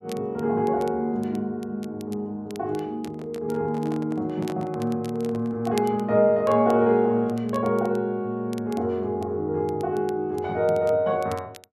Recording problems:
crackling; vinyl, SNR 24 dB
microphone handling noise; from 3 to 5.5 s; peak -8 dB vs average level

